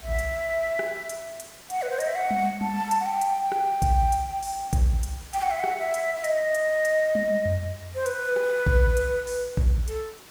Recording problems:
background hiss; slope -2 dB per octave, SNR 21 dB

